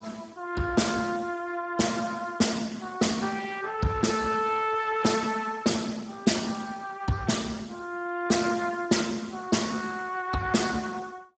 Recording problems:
lossy codec; Speex, log-spectral distance 5 dB, nothing above 7.8 kHz

